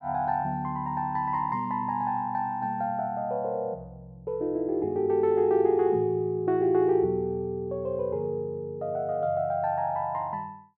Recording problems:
none

